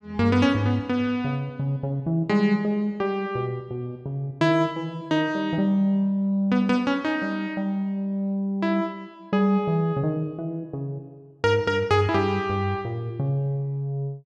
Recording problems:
none

